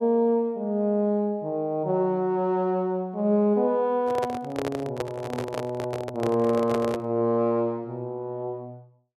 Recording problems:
handling noise; from 4 to 7 s; peak -1 dB vs average level

